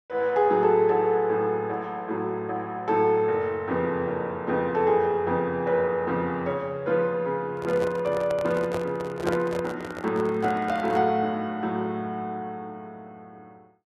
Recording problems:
handling noise; from 7.5 to 11 s; peak 0 dB vs average level

